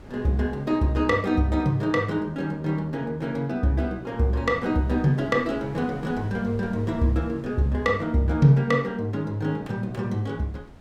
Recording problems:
wind on the microphone; below 420 Hz, SNR 23 dB

